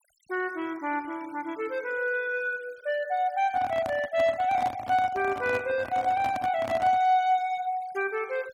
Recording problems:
denoising artefacts; signal-to-artefact ratio 24 dB
microphone handling noise; from 3.5 to 7 s; peak -5 dB vs average level

